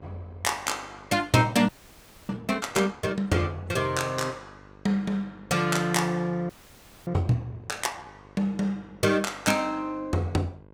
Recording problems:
hum; 50 Hz, harmonics up to 1.6 kHz, SNR 25 dB
audio freezing; at 1.5 s for 0.5 s and at 6.5 s for 0.5 s

